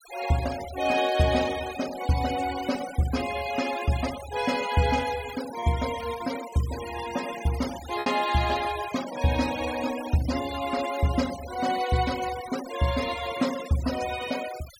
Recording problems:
denoising artefacts; signal-to-artefact ratio 12 dB
packet loss; 0.7% of the sound replaced, filled with repeated pitch periods

